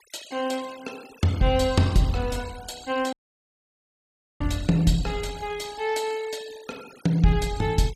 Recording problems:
noise reduction artefacts; signal-to-artefact ratio 20 dB
dropout; at 3 s for 1.5 s

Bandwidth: 15 kHz